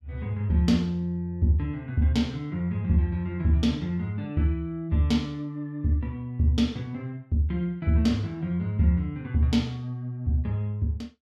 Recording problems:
none

